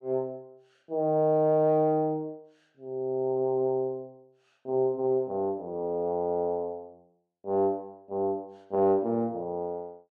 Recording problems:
none

